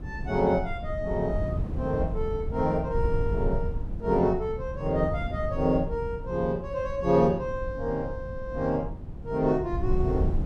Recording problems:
wind on the microphone; below 120 Hz, SNR 6 dB

